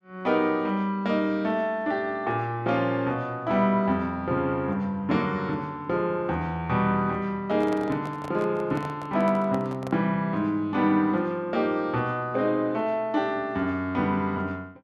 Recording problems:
microphone handling noise; from 7.5 to 10 s; peak -8 dB vs average level

